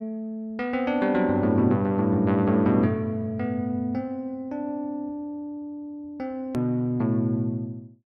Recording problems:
edit click; at 6.5 s

